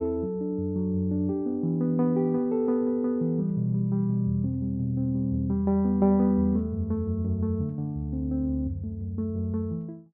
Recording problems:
none

